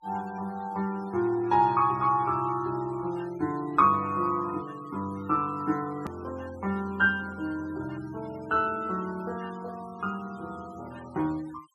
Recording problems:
denoising artefacts; signal-to-artefact ratio 23 dB
click at an edit; at 6 s

